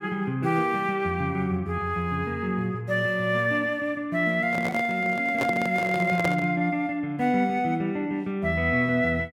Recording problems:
microphone handling noise; from 4.5 to 6.5 s; peak +1 dB vs average level

